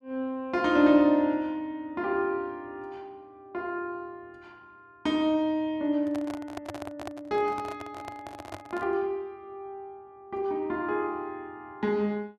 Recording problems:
microphone handling noise; from 6 to 9 s; peak -5 dB vs average level

